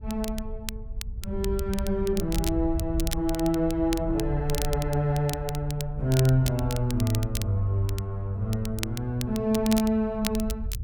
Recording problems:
wind noise; below 74 Hz, SNR 9 dB
crackle; vinyl, SNR 12 dB

